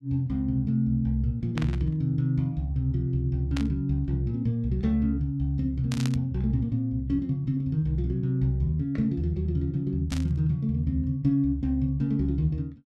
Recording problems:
burst of static; 4 times, first at 1.5 s; peak -5 dB vs average level

